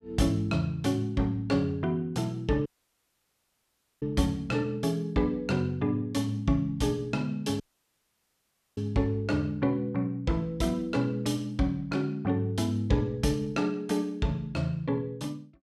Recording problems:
dropout; at 2.5 s for 1.5 s and at 7.5 s for 1 s

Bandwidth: 14.5 kHz